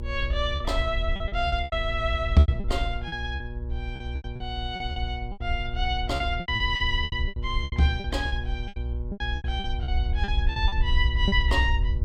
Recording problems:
hum; 60 Hz, harmonics up to 1.1 kHz, SNR 12 dB
low-frequency rumble; below 66 Hz, SNR 2 dB
lost packets; 15% of the sound replaced, filled with repeated pitch periods

